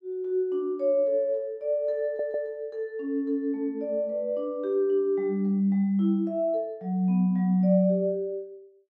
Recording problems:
stutter; at 2 s

